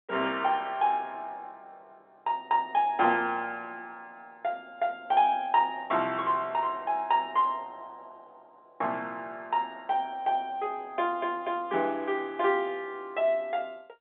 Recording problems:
phone line; 280 Hz to 3.6 kHz, G.711

